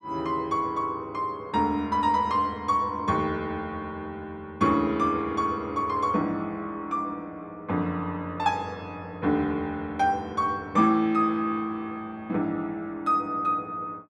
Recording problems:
none

